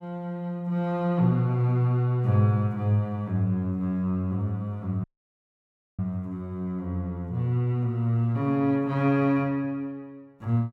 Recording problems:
audio cutting out; at 5 s for 1 s

